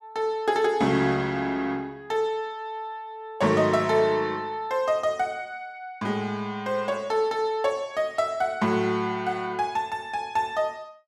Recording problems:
none

